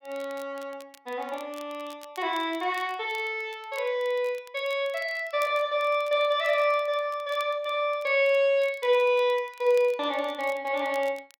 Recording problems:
crackle; vinyl, SNR 25 dB

